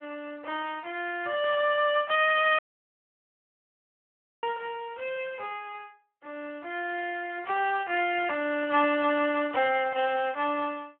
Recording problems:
phone line; 320 Hz to 3.4 kHz, Speex
burst of static; at 1.5 s, at 7.5 s and at 9.5 s; peak -8 dB vs average level
audio cutting out; at 2.5 s for 2 s

